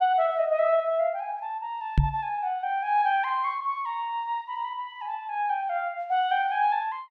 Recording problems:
knock on the microphone; at 2 s; peak +8 dB vs average level

